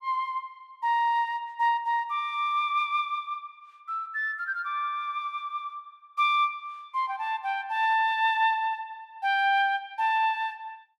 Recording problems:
none

